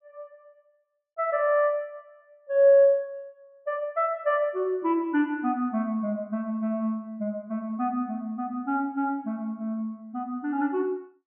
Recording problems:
low-pass filter; nothing above 3.3 kHz

